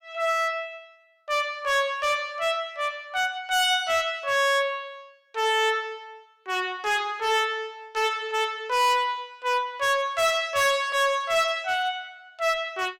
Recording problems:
distorted audio; hard clipping, signal-to-distortion ratio 7 dB

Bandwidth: 16 kHz